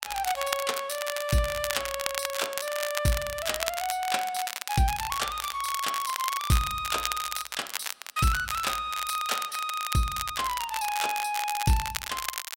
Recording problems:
crackle; vinyl, SNR 5 dB

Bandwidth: 16 kHz